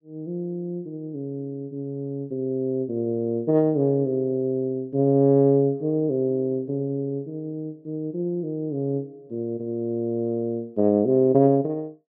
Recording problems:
none

